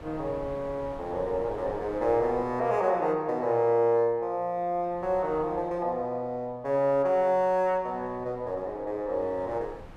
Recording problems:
wind noise; below 630 Hz, SNR 20 dB

